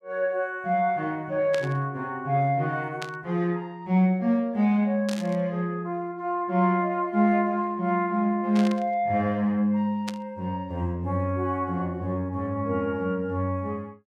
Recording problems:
burst of static; 5 times, first at 1.5 s; peak -5 dB vs average level

